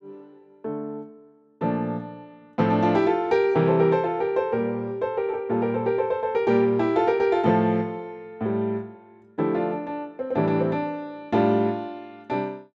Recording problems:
none

